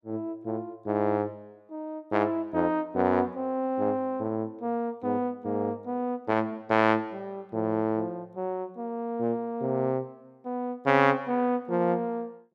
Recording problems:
none

